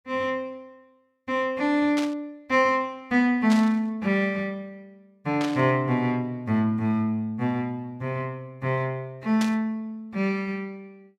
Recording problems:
burst of static; 4 times, first at 2 s; peak -3 dB vs average level

